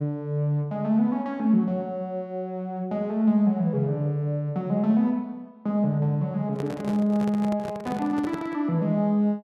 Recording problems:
handling noise; from 6.5 to 8.5 s; peak -6 dB vs average level

